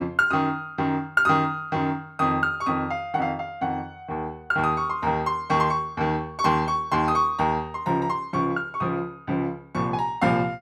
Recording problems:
none

